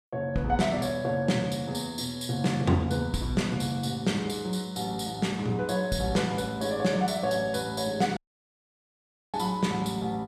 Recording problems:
dropout; at 8 s for 1 s

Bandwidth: 14.5 kHz